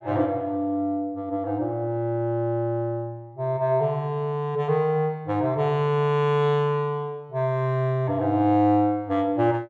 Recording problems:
none

